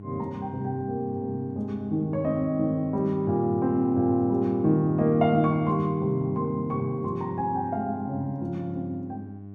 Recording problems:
hum; 50 Hz, harmonics up to 700 Hz, SNR 15 dB

